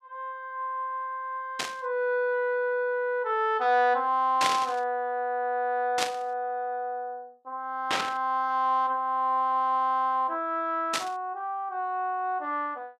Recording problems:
burst of static; 5 times, first at 1.5 s; peak +5 dB vs average level

